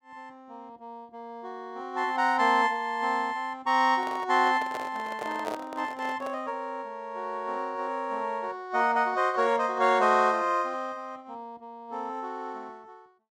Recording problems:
handling noise; from 4 to 6.5 s; peak -3 dB vs average level

